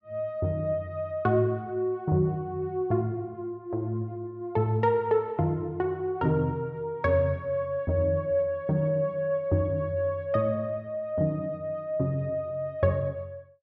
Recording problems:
none

